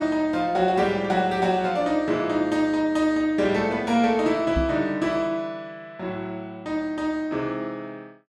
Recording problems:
knock on the microphone; at 4.5 s; peak +1 dB vs average level

